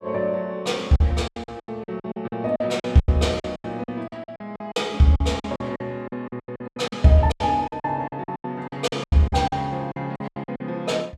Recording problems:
packet loss; 20% of the sound replaced, filled with silence

